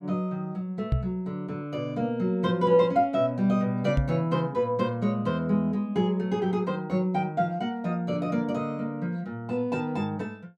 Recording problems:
knock on the microphone; at 1 s and at 4 s; peak +5 dB vs average level

